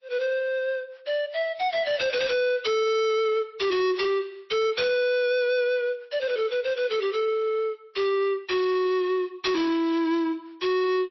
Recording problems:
codec artefacts; MP3, log-spectral distance 2 dB, nothing above 5.7 kHz
distorted audio; soft clipping, signal-to-distortion ratio 7 dB

